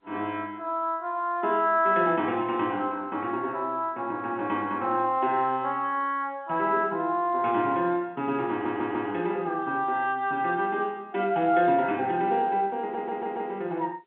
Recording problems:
phone line; 220 Hz to 3.5 kHz, G.711
stutter; at 8.5 s and at 13 s

